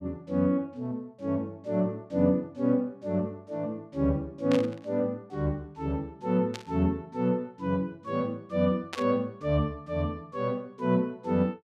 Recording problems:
static burst; at 4.5 s, at 6.5 s and at 9 s; peak -2 dB vs average level

